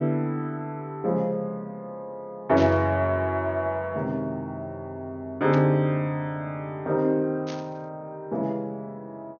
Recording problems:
treble cut off; nothing above 6.6 kHz
burst of static; at 2.5 s, at 5.5 s and at 7.5 s; peak -7 dB vs average level

